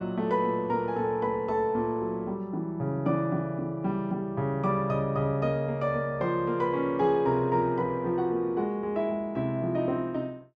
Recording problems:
none

